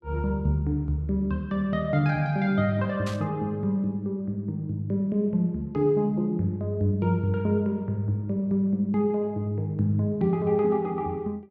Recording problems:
static burst; at 3 s; peak -9 dB vs average level

